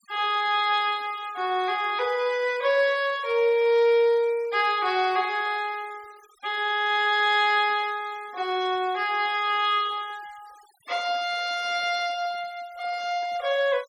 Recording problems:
denoising artefacts; signal-to-artefact ratio 24 dB

